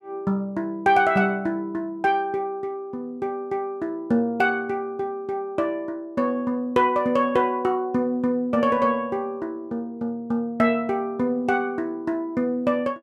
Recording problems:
none

